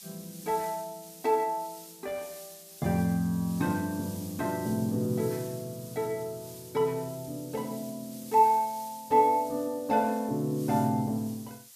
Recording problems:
background hiss; slope +3 dB per octave, SNR 17 dB

